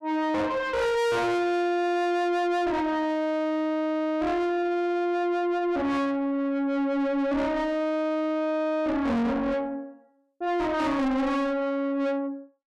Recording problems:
distorted audio; soft clipping, signal-to-distortion ratio 7 dB

